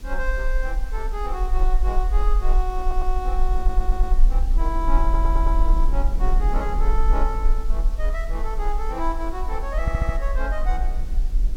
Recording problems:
hiss; slope 0 dB per octave, SNR 19 dB
low-frequency rumble; below 42 Hz, strongest tone 22 Hz, SNR -5 dB
wind on the microphone; below 280 Hz, SNR 10 dB
audio stuttering; 4 times, first at 3 s

